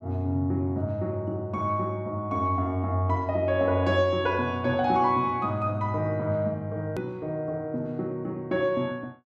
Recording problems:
edit click; at 7 s

